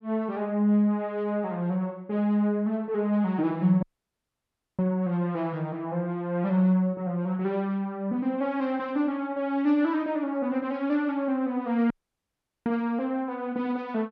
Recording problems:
dropout; at 4 s for 1 s and at 12 s for 1 s

